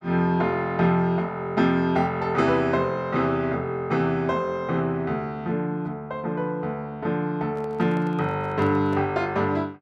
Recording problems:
handling noise; from 7.5 to 9 s; peak -12 dB vs average level

